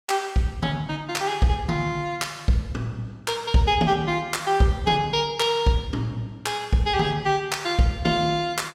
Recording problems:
none

